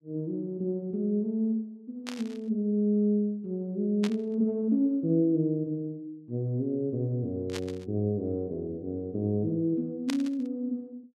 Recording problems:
static burst; 4 times, first at 2 s; peak -2 dB vs average level

